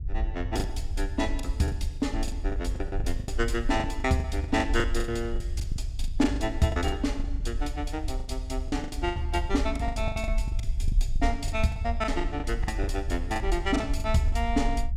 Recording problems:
rumble; below 60 Hz, SNR 3 dB
lost packets; 15% of the sound replaced, filled with the last packet

